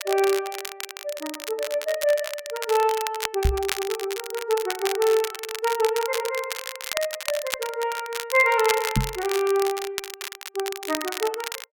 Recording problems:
crackle; vinyl, SNR 7 dB
microphone thump; at 3.5 s and at 9 s; peak +7 dB vs average level

